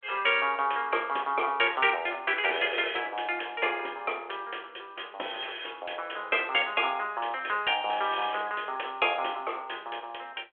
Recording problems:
telephone audio; 300 Hz to 3.4 kHz, G.726

